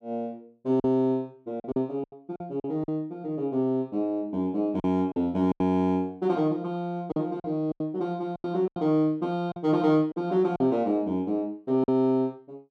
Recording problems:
lost packets; 8% of the sound replaced, filled with silence

